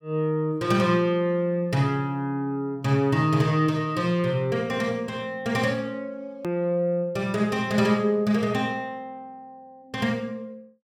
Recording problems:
hard cut with a click; at 6.5 s

